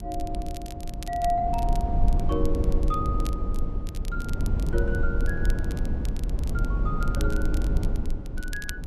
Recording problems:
rumble; below 74 Hz, SNR -4 dB
crackle; vinyl, SNR 14 dB

